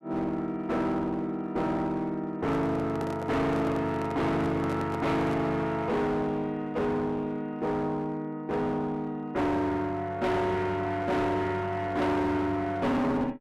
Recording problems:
distorted audio; hard clipping, uneven, signal-to-distortion ratio 7 dB
handling noise; from 2.5 to 5.5 s; peak -3 dB vs average level

